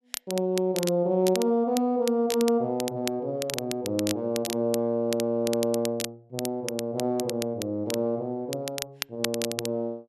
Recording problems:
crackle; vinyl, SNR 9 dB

